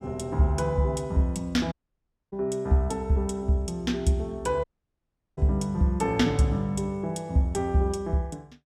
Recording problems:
dropout; at 1.5 s for 0.5 s and at 4.5 s for 0.5 s

